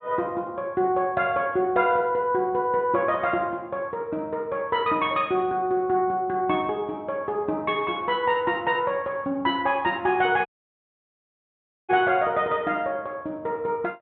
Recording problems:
treble missing; nothing above 4 kHz
audio cutting out; at 10 s for 1.5 s

